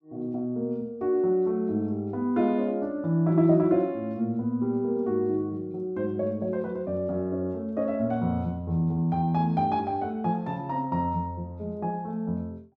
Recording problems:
none

